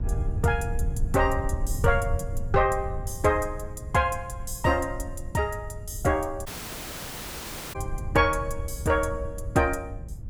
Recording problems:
low-frequency rumble; below 94 Hz, SNR 7 dB
audio cutting out; at 6.5 s for 1.5 s

